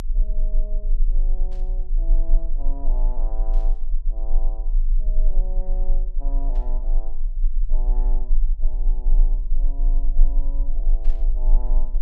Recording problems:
low-frequency rumble; below 30 Hz, strongest tone 26 Hz, SNR -19 dB
burst of static; 4 times, first at 1.5 s; peak -7 dB vs average level

